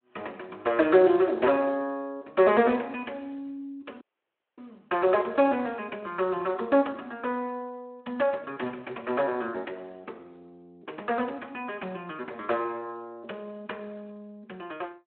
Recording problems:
phone line; 300 Hz to 3.8 kHz, Speex
dropout; at 4 s for 0.5 s

